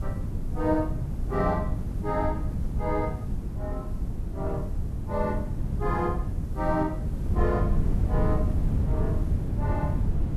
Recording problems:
hiss; SNR 28 dB
wind noise; below 140 Hz, SNR -1 dB

